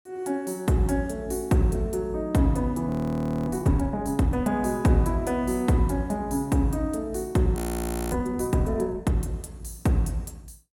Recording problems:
audio freezing; at 3 s for 0.5 s and at 7.5 s for 0.5 s

